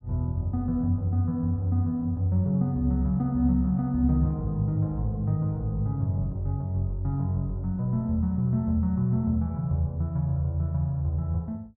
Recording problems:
none

